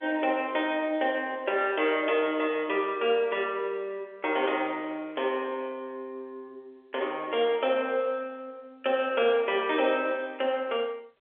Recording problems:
phone line; 340 Hz to 3.5 kHz, G.711

